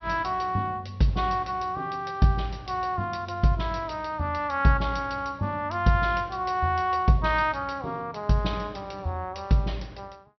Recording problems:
treble missing; nothing above 5.9 kHz

